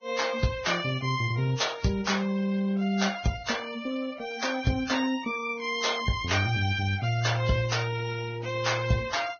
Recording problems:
lossy codec; Vorbis, then Vorbis, log-spectral distance 4 dB, nothing above 6.5 kHz

